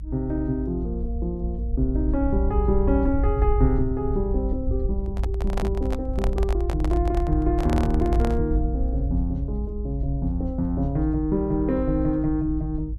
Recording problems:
low-frequency rumble; below 60 Hz, strongest tone 56 Hz, SNR 1 dB
microphone handling noise; from 5 to 8.5 s; peak -1 dB vs average level

